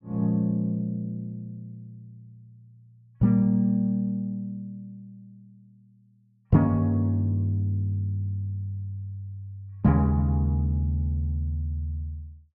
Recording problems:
none

